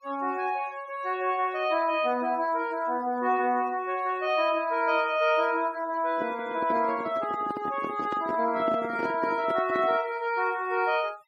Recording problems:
noise reduction artefacts; signal-to-artefact ratio 24 dB
handling noise; from 6 to 10 s; peak -2 dB vs average level

